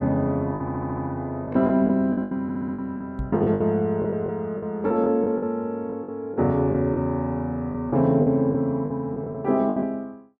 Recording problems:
packet loss; 11% of the sound replaced, filled with the last packet
stutter; at 0.5 s and at 2.5 s
microphone thump; at 3 s; peak -2 dB vs average level

